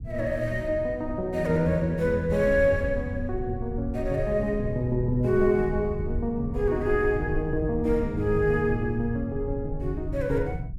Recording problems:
rumble; below 100 Hz, SNR 9 dB

